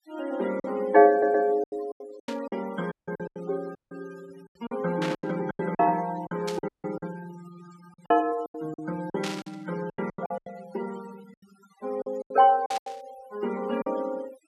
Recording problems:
denoising artefacts; signal-to-artefact ratio 19 dB
lost packets; 13% of the sound replaced, filled with silence
audio stuttering; at 1 s
burst of static; 5 times, first at 2.5 s; peak -3 dB vs average level
audio cutting out; at 3 s, at 4 s and at 6.5 s

